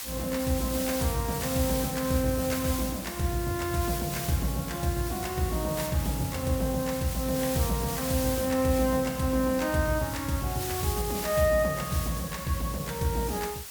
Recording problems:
hiss; slope +1 dB per octave, SNR 7 dB

